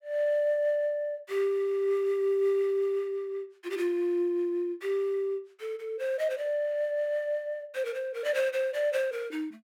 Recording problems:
none

